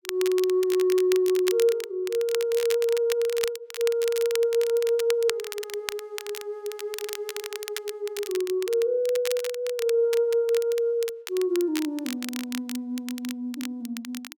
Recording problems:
crackle; vinyl, SNR 11 dB

